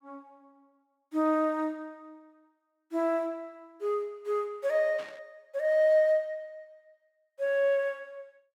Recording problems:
static burst; at 5 s; peak -13 dB vs average level

